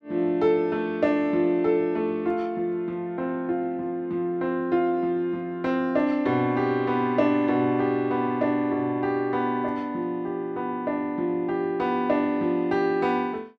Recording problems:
none

